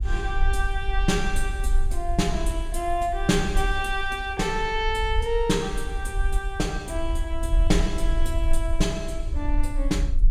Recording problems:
low-frequency rumble; below 48 Hz, SNR 2 dB

